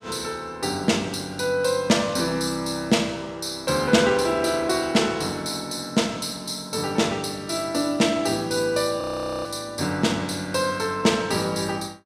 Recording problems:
frozen audio; at 9 s

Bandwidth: 15.5 kHz